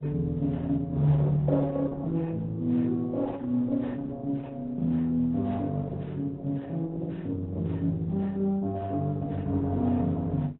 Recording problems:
treble cut off; nothing above 3.9 kHz
codec artefacts; Opus, then AAC, log-spectral distance 2 dB

